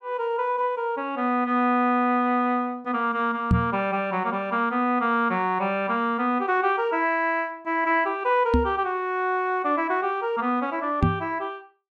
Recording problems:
knock on the microphone; at 3.5 s, at 8.5 s and at 11 s; peak +7 dB vs average level

